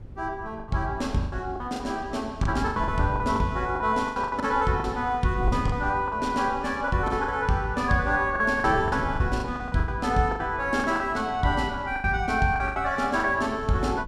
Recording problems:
wind noise; below 150 Hz, SNR 14 dB
packet loss; 13% of the sound replaced, filled with the last packet

